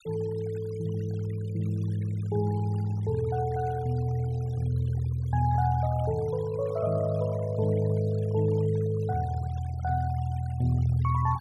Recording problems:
noise reduction artefacts; signal-to-artefact ratio 22 dB

